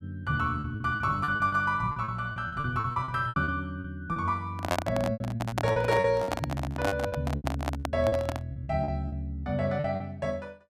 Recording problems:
packet loss; 15% of the sound replaced, filled with repeated pitch periods
handling noise; from 4.5 to 8.5 s; peak +5 dB vs average level

